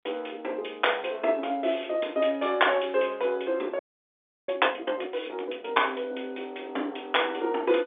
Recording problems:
telephone audio; 240 Hz to 3.6 kHz, G.711
audio freezing; at 4 s for 0.5 s

